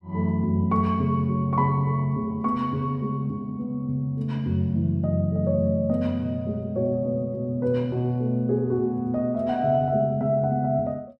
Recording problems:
none

